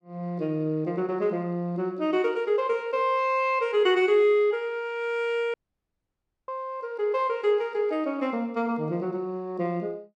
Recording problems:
audio cutting out; at 5.5 s for 1 s

